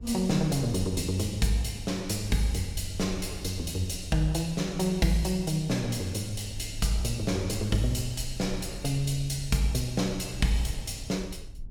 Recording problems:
rumble; below 74 Hz, SNR 14 dB

